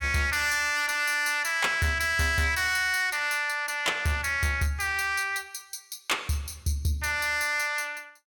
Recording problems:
distorted audio; soft clipping, signal-to-distortion ratio 12 dB

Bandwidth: 17.5 kHz